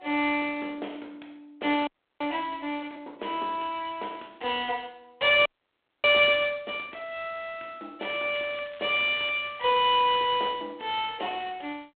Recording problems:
telephone audio; 240 Hz to 3.5 kHz, G.726
frozen audio; at 2 s and at 5.5 s for 0.5 s
crackle; from 8 to 10 s; loose cable, SNR 23 dB

